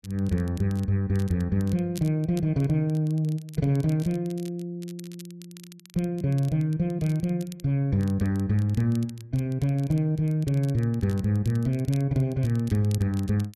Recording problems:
crackling; vinyl, SNR 24 dB

